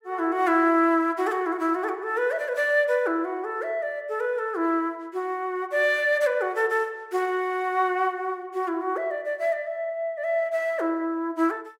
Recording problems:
none

